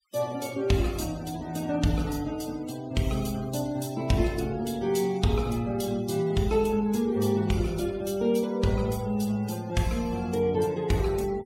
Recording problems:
noise reduction artefacts; signal-to-artefact ratio 20 dB

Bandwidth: 16 kHz